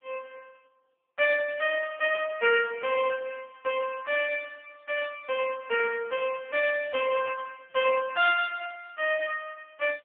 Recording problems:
phone line; 190 Hz to 3.1 kHz, AMR-NB

